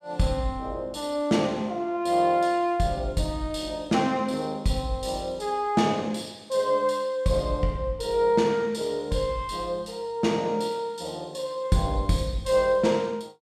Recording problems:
none

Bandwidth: 14 kHz